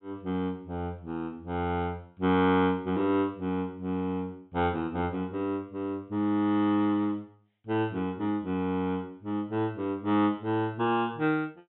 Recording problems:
treble missing; nothing above 3.9 kHz

